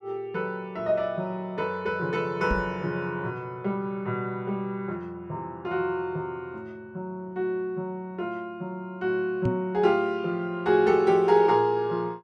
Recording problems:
microphone bump; at 2.5 s and at 9.5 s; peak +3 dB vs average level

